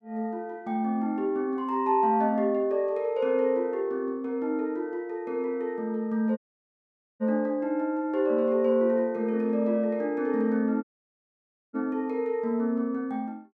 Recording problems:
dropout; at 6.5 s for 1 s and at 11 s for 1 s

